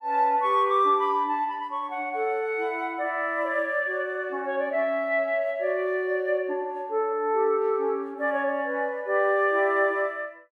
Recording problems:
none

